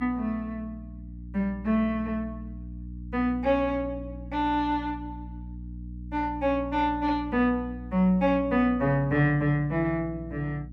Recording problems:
hum; 60 Hz, harmonics up to 300 Hz, SNR 13 dB

